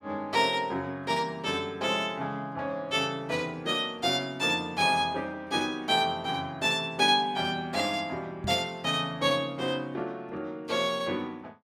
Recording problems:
microphone bump; at 8.5 s; peak -3 dB vs average level

